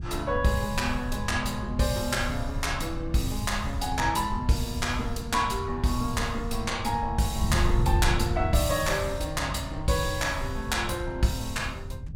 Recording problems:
wind on the microphone; below 110 Hz, SNR 5 dB

